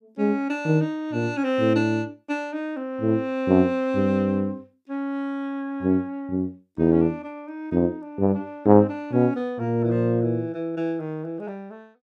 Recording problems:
none

